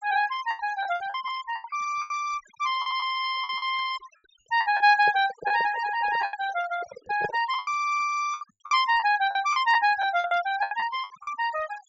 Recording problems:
treble missing; nothing above 8 kHz
noise reduction artefacts; signal-to-artefact ratio 16 dB
packet loss; 12% of the sound replaced, filled with the last packet
handling noise; from 5 to 7.5 s; peak -3 dB vs average level

